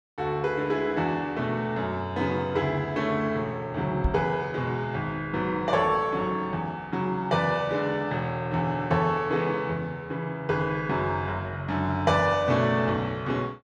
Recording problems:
microphone thump; at 4 s; peak +4 dB vs average level

